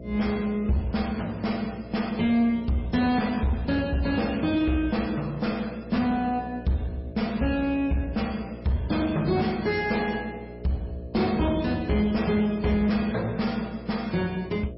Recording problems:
lossy codec; MP3, log-spectral distance 3 dB, nothing above 5.5 kHz
distorted audio; soft clipping, signal-to-distortion ratio 9 dB
hum; 60 Hz, harmonics up to 660 Hz, SNR 15 dB

